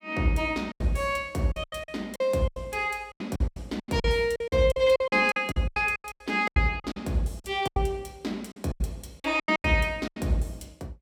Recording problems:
packet loss; 17% of the sound replaced, filled with silence

